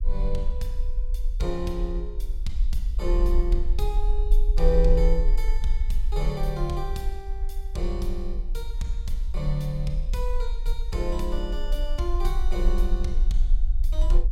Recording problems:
rumble; below 42 Hz, SNR -4 dB

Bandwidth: 16.5 kHz